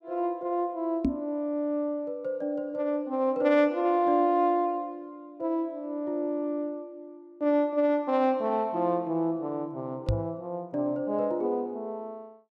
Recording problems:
microphone bump; at 1 s and at 10 s; peak +5 dB vs average level

